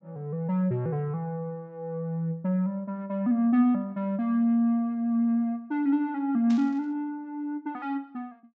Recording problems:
treble cut off; nothing above 8 kHz
burst of static; at 6.5 s; peak -13 dB vs average level

